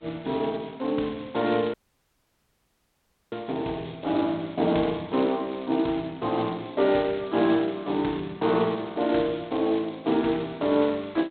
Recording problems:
telephone audio; 220 Hz to 3.9 kHz, G.726
audio cutting out; at 1.5 s for 1.5 s

